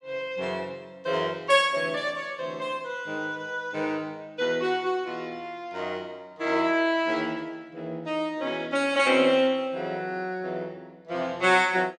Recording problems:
none

